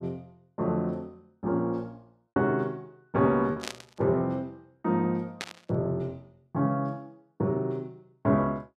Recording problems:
lost packets; 2% of the sound replaced, filled with repeated pitch periods
burst of static; at 3.5 s and at 5.5 s; peak -1 dB vs average level

